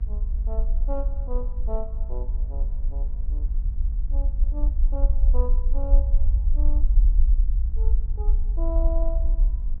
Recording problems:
hum; 50 Hz, harmonics up to 950 Hz, SNR 10 dB
low-frequency rumble; below 48 Hz, SNR -13 dB

